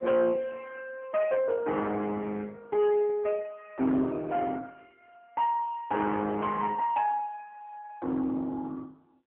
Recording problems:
phone line; 220 Hz to 3.2 kHz, AMR-NB
distortion; hard clipping, uneven, signal-to-distortion ratio 12 dB

